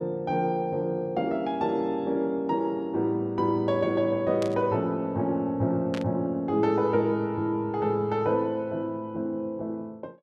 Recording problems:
static burst; at 4.5 s and at 6 s; peak -7 dB vs average level

